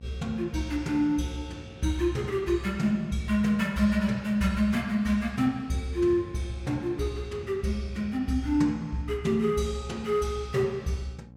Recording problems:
hum; 60 Hz, harmonics up to 840 Hz, SNR 21 dB

